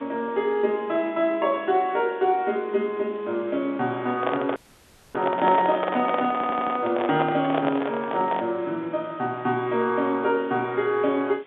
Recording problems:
phone line; 170 Hz to 3.7 kHz, G.711
background hiss; SNR 27 dB
microphone handling noise; from 4 to 8.5 s; peak +2 dB vs average level
audio cutting out; at 4.5 s for 0.5 s
stutter; at 6.5 s

